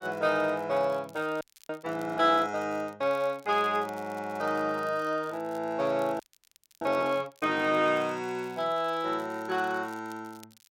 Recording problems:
crackle; vinyl, SNR 28 dB
frozen audio; at 1.5 s and at 6 s for 0.5 s

